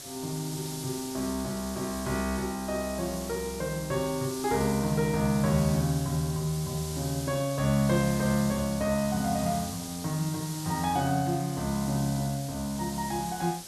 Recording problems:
background hiss; SNR 10 dB

